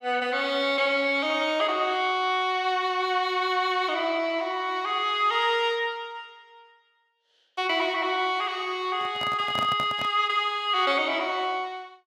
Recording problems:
microphone handling noise; from 9 to 10 s; peak -3 dB vs average level

